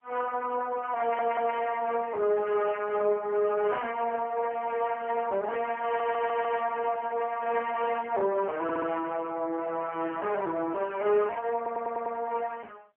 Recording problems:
telephone audio; 280 Hz to 3.2 kHz, AMR-NB
stutter; 4 times, first at 1 s

